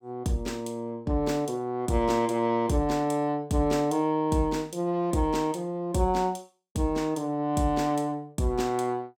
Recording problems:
none

